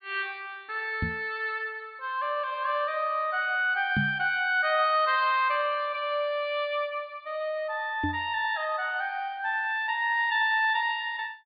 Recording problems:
treble missing; nothing above 4.8 kHz
knock on the microphone; at 1 s, at 4 s and at 8 s; peak +2 dB vs average level

